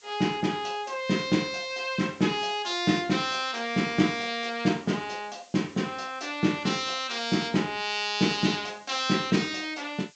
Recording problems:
treble missing; nothing above 8 kHz
background hiss; SNR 27 dB

